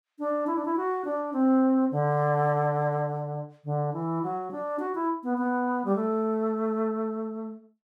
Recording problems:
none

